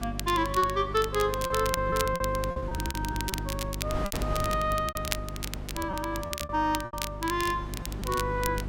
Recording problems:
electrical hum; 50 Hz, harmonics up to 400 Hz, SNR 7 dB
wind noise; below 620 Hz, SNR 13 dB
crackle; vinyl, SNR 8 dB
lost packets; 11% of the sound replaced, filled with repeated pitch periods

